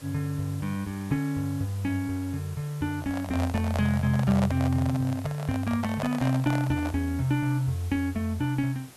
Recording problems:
hiss; slope -2 dB per octave, SNR 21 dB
handling noise; from 3 to 7 s; peak 0 dB vs average level

